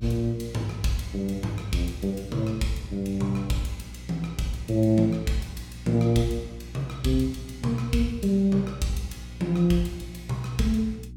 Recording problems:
hum; 60 Hz, harmonics up to 360 Hz, SNR 15 dB

